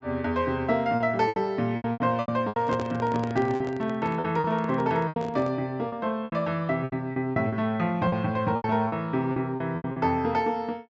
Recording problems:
treble cut off; nothing above 7.7 kHz
lost packets; 12% of the sound replaced, filled with repeated pitch periods
microphone handling noise; from 2.5 to 5.5 s; peak -3 dB vs average level

